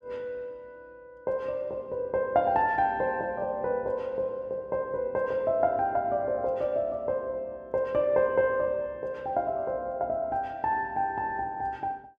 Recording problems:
none

